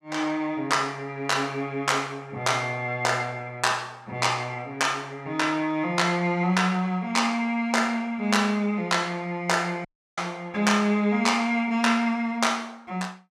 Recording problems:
dropout; at 10 s

